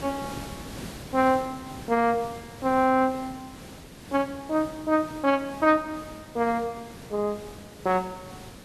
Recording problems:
hiss; slope -4 dB per octave, SNR 16 dB

